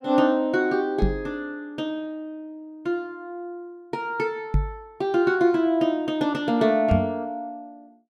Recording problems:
microphone bump; at 1 s, at 4.5 s and at 7 s; peak +6 dB vs average level

